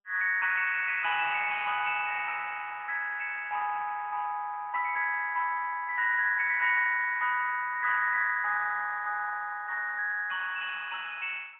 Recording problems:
telephone audio; 150 Hz to 2.5 kHz, AMR-NB, then MP3

